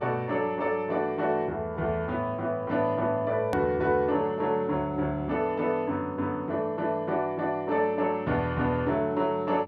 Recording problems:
electrical hum; 50 Hz, harmonics up to 1 kHz, SNR 21 dB
click at an edit; at 3.5 s

